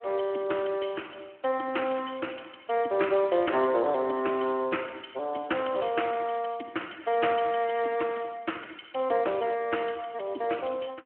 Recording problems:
phone line; 240 Hz to 3.1 kHz, Speex

